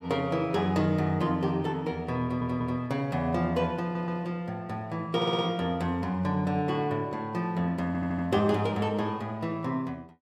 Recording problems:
audio stuttering; 4 times, first at 2 s

